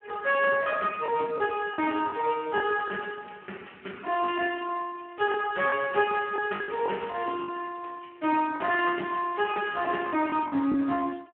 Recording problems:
phone line; 220 Hz to 3.1 kHz, Speex
lost packets; 6% of the sound replaced, filled with the last packet

